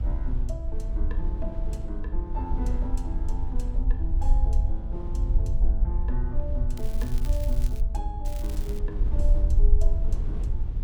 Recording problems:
low-frequency rumble; below 54 Hz, SNR -10 dB
wind noise; below 210 Hz, SNR 4 dB
crackle; from 7 to 8 s and at 8.5 s; loose cable, SNR 9 dB

